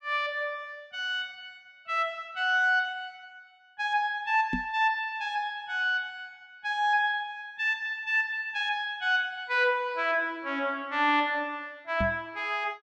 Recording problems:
microphone bump; at 4.5 s and at 12 s; peak +1 dB vs average level

